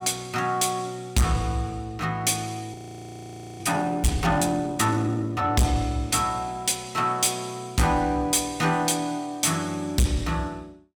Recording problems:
distorted audio; soft clipping, signal-to-distortion ratio 7 dB
audio freezing; at 2.5 s for 1 s

